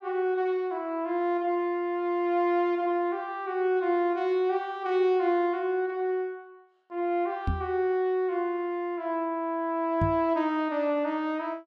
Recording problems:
microphone bump; at 7.5 s and at 10 s; peak +3 dB vs average level

